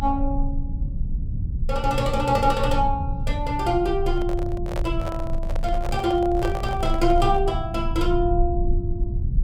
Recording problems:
rumble; below 70 Hz, strongest tone 26 Hz, SNR 4 dB
handling noise; from 4 to 7.5 s; peak -2 dB vs average level

